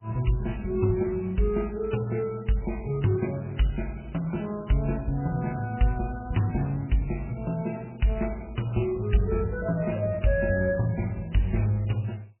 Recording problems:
codec artefacts; MP3, log-spectral distance 5 dB, nothing above 3 kHz

